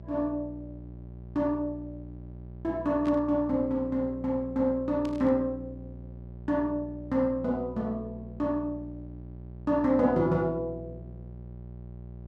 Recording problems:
electrical hum; 60 Hz, harmonics up to 780 Hz, SNR 15 dB
burst of static; at 3 s and at 5 s; peak -13 dB vs average level

